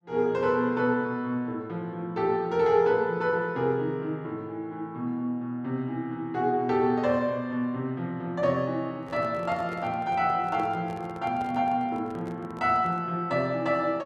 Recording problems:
handling noise; from 9 to 13 s; peak -11 dB vs average level

